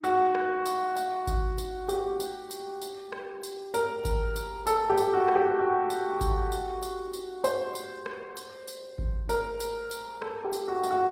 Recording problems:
lossy compression; Opus, log-spectral distance 4 dB, nothing above 16 kHz

